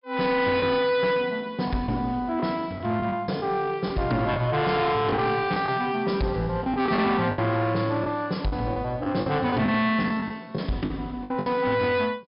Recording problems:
treble missing; nothing above 5.5 kHz
distortion; soft clipping, signal-to-distortion ratio 11 dB
packet loss; 7% of the sound replaced, filled with the last packet

